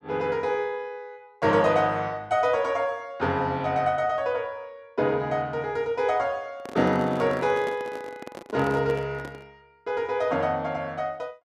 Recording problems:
microphone handling noise; from 6.5 to 9.5 s; peak -6 dB vs average level

